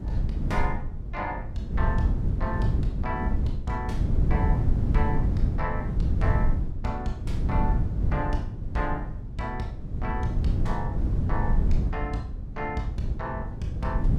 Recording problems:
wind on the microphone; below 120 Hz, SNR -5 dB

